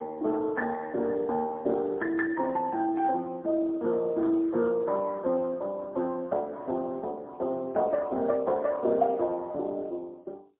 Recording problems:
telephone audio; 220 Hz to 3.6 kHz, AMR-NB, then MP3

